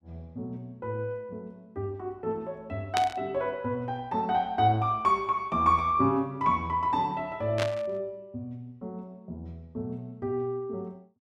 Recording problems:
static burst; at 3 s and at 7.5 s; peak +2 dB vs average level

